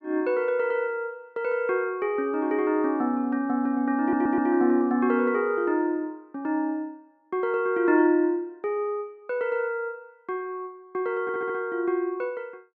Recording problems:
stutter; at 4 s and at 11 s

